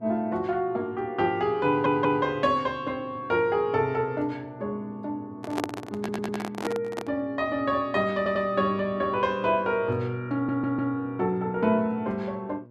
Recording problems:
hum; 60 Hz, harmonics up to 1.1 kHz, SNR 23 dB
stutter; 4 times, first at 1.5 s
microphone handling noise; from 5.5 to 7 s; peak +1 dB vs average level

